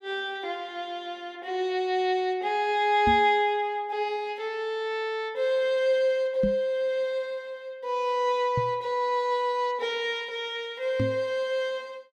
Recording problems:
microphone thump; 4 times, first at 3 s; peak +2 dB vs average level

